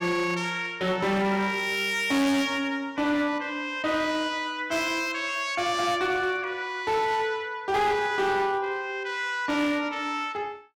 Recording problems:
distortion; hard clipping, signal-to-distortion ratio 10 dB

